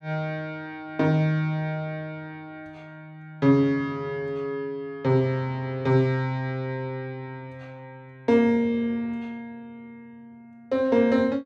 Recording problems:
none

